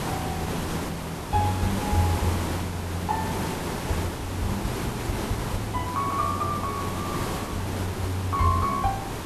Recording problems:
background hiss; slope -6 dB per octave, SNR 2 dB

